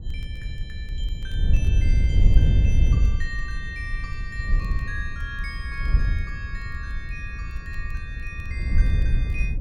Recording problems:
wind noise; below 80 Hz, SNR -11 dB
crackling; vinyl, SNR 26 dB

